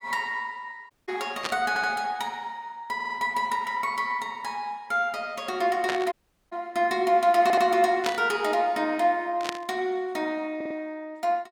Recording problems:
audio cutting out; at 1 s and at 6 s
burst of static; 4 times, first at 1.5 s; peak +1 dB vs average level
stutter; 4 times, first at 1.5 s

